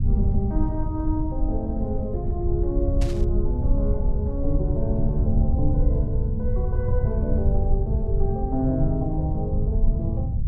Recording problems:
low-frequency rumble; below 88 Hz, SNR -3 dB
burst of static; at 3 s; peak -5 dB vs average level

